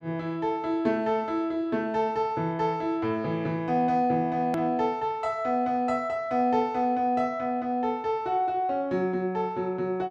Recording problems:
click at an edit; at 4.5 s

